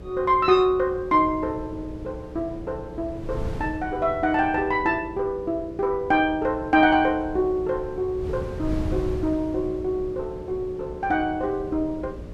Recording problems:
hum; 60 Hz, harmonics up to 600 Hz, SNR 19 dB
wind on the microphone; below 160 Hz, SNR 14 dB

